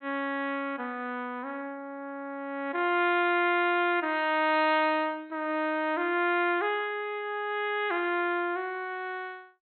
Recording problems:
treble missing; nothing above 4.1 kHz

